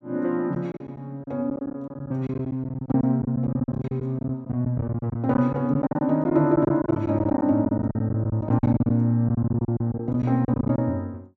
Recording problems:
packet loss; 15% of the sound replaced, filled with silence

